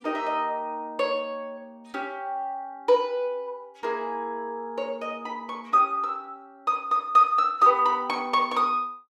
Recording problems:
none

